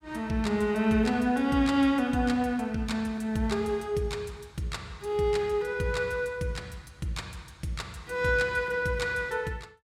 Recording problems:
none

